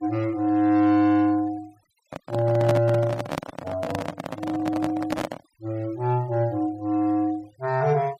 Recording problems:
noise reduction artefacts; signal-to-artefact ratio 24 dB
handling noise; from 2 to 5.5 s; peak +1 dB vs average level

